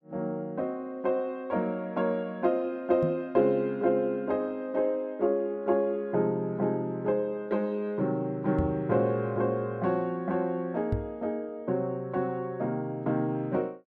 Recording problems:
microphone thump; at 3 s, at 8.5 s and at 11 s; peak +3 dB vs average level

